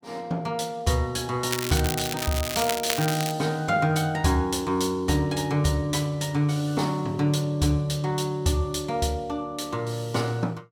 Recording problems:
crackle; from 1.5 to 3.5 s; loose cable, SNR 4 dB

